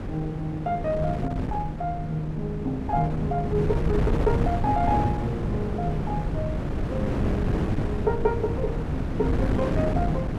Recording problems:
wind on the microphone; below 290 Hz, SNR 0 dB

